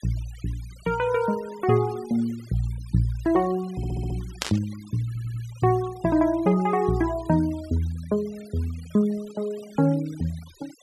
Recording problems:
noise reduction artefacts; signal-to-artefact ratio 22 dB
stutter; at 4 s and at 5 s
static burst; at 4.5 s; peak +2 dB vs average level

